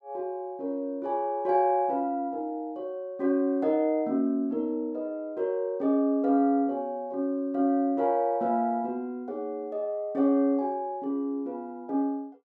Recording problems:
none

